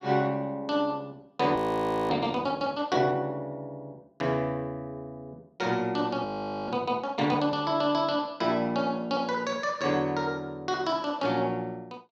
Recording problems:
audio freezing; at 1.5 s for 0.5 s and at 6.5 s

